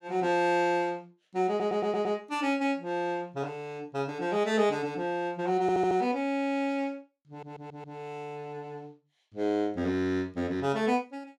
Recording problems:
stutter; at 1.5 s, at 5.5 s and at 7.5 s

